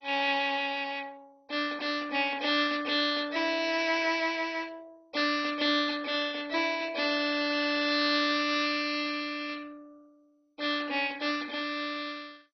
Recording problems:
lossy codec; MP2, log-spectral distance 5 dB, nothing above 5.3 kHz

